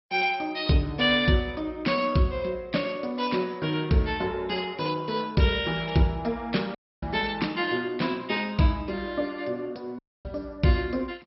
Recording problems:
lossy codec; MP2, log-spectral distance 5 dB, nothing above 5.5 kHz
audio cutting out; at 7 s and at 10 s

